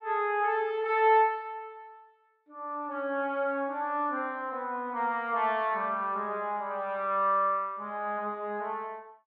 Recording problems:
none

